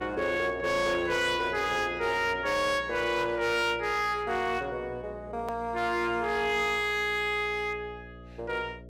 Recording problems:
distortion; hard clipping, uneven, signal-to-distortion ratio 10 dB
hum; 60 Hz, harmonics up to 660 Hz, SNR 20 dB
hard cut with a click; at 5.5 s

